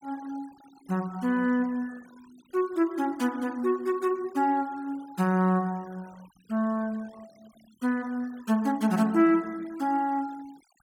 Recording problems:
noise reduction artefacts; signal-to-artefact ratio 26 dB

